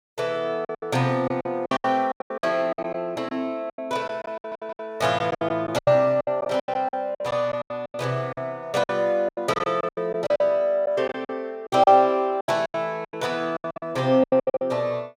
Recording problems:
lost packets; 18% of the sound replaced, filled with silence
stutter; at 4.5 s

